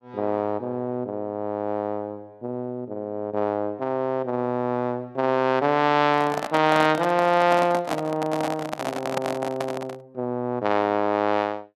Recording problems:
handling noise; from 6 to 10 s; peak +1 dB vs average level

